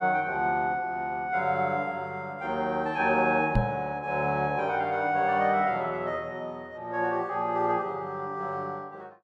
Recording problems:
microphone thump; at 3.5 s; peak +6 dB vs average level

